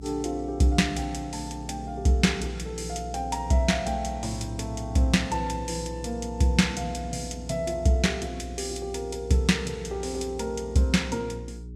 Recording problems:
hum; 60 Hz, harmonics up to 420 Hz, SNR 12 dB

